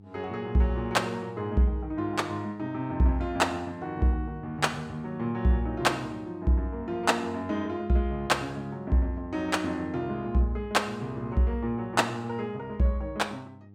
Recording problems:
mains hum; 50 Hz, harmonics up to 800 Hz, SNR 22 dB

